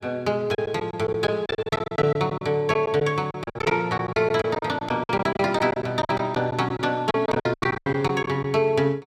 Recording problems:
packet loss; 15% of the sound replaced, filled with silence

